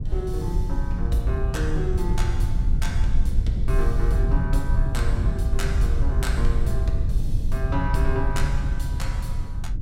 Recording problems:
rumble; below 74 Hz, SNR -5 dB

